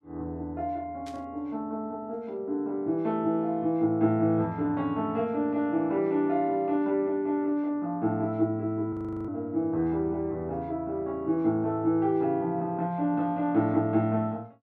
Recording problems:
static burst; at 1 s; peak -15 dB vs average level
frozen audio; at 9 s

